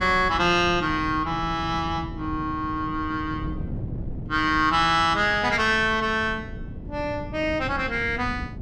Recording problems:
wind noise; below 200 Hz, SNR 12 dB

